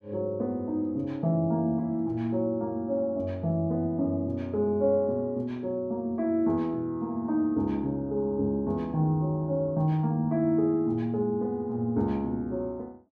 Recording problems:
none

